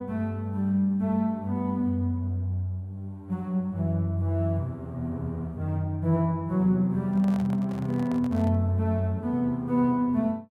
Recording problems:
handling noise; from 7 to 8.5 s; peak -11 dB vs average level

